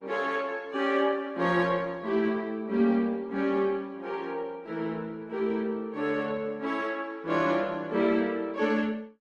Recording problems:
lossy compression; Opus, log-spectral distance 2 dB

